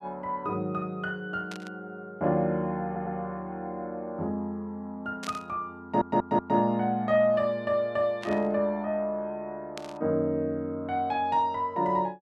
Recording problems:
burst of static; 4 times, first at 1.5 s; peak -7 dB vs average level
stutter; at 3 s and at 6 s

